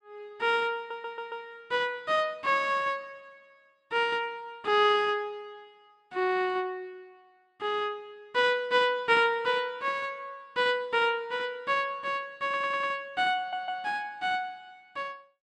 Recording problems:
audio stuttering; at 1 s, at 12 s and at 13 s

